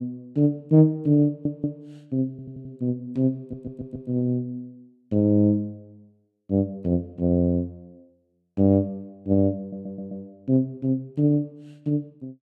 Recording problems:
audio stuttering; 4 times, first at 1.5 s

